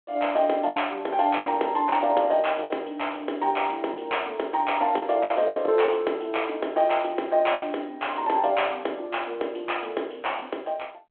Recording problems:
phone line; 260 Hz to 3.4 kHz, G.726
lost packets; 5% of the sound replaced, filled with the last packet

